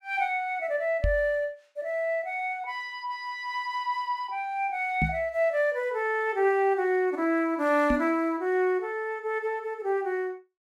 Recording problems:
knock on the microphone; at 1 s, at 5 s and at 8 s; peak +3 dB vs average level

